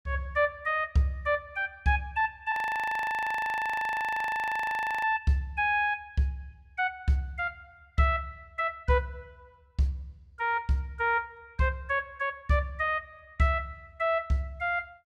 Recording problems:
frozen audio; at 2.5 s for 2.5 s

